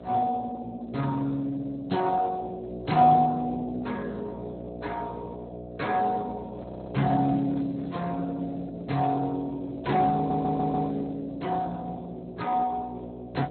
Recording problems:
low-pass filter; nothing above 4.2 kHz
codec artefacts; Speex, log-spectral distance 3 dB
electrical hum; 60 Hz, harmonics up to 720 Hz, SNR 13 dB
handling noise; from 6.5 to 8 s; peak -10 dB vs average level
stutter; at 6.5 s and at 10 s

